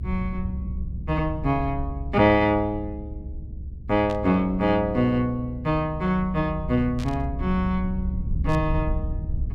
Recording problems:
rumble; below 86 Hz, SNR 8 dB
burst of static; at 4 s, at 7 s and at 8.5 s; peak -11 dB vs average level

